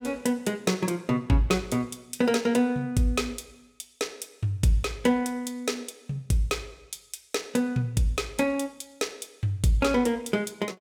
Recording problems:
none

